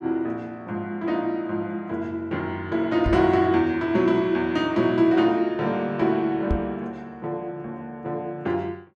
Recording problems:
microphone thump; at 3 s and at 6.5 s; peak +2 dB vs average level

